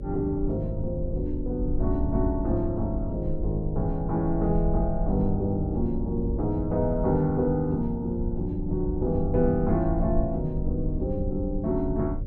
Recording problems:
hum; 50 Hz, harmonics up to 600 Hz, SNR 15 dB
rumble; below 74 Hz, SNR 6 dB

